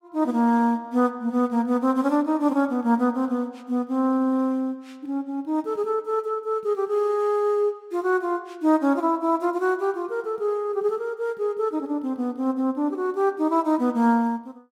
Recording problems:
none

